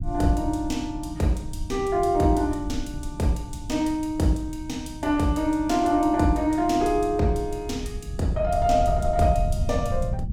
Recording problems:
low-frequency rumble; below 100 Hz, SNR 10 dB

